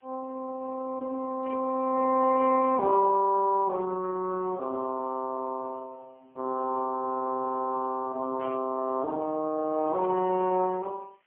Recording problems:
phone line; 220 Hz to 2.3 kHz, AMR-NB
background hiss; SNR 43 dB
static burst; at 1.5 s, at 8.5 s and at 10 s; peak -14 dB vs average level

